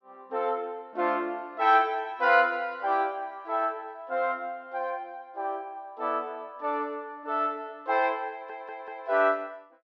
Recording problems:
audio stuttering; at 8.5 s

